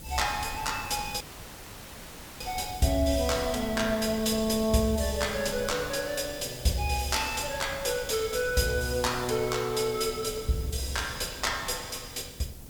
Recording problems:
hiss; slope +2 dB per octave, SNR 17 dB
wind on the microphone; below 210 Hz, SNR 16 dB
audio cutting out; at 1 s for 1 s

